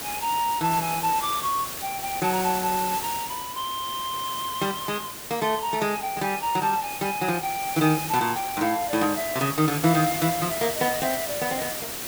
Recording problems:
hiss; slope -2 dB per octave, SNR 6 dB

